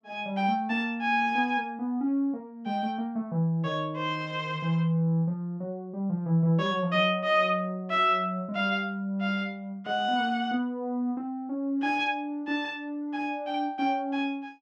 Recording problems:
none

